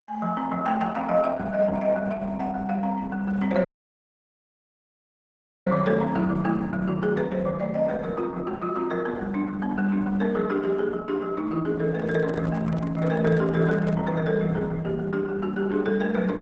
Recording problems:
codec artefacts; Opus, log-spectral distance 3 dB, nothing above 7.8 kHz
dropout; at 3.5 s for 2 s
handling noise; from 12 to 14 s; peak -9 dB vs average level

